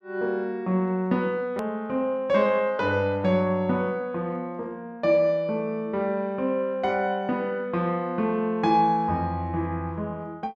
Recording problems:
hard cut with a click; at 1.5 s

